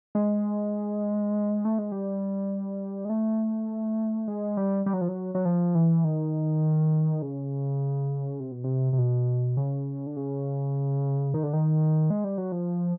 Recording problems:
none

